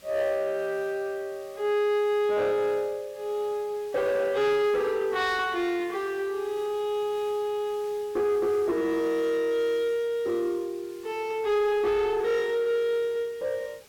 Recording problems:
distortion; soft clipping, signal-to-distortion ratio 11 dB
hiss; slope -1 dB per octave, SNR 24 dB

